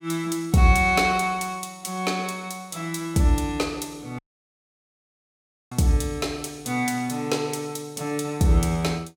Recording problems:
audio cutting out; at 4 s for 1.5 s

